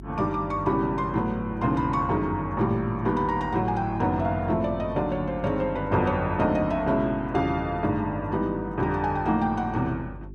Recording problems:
hum; 50 Hz, harmonics up to 400 Hz, SNR 15 dB

